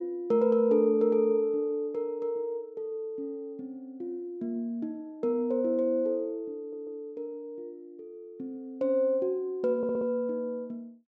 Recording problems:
low-pass filter; nothing above 8 kHz
audio stuttering; at 6.5 s and at 10 s

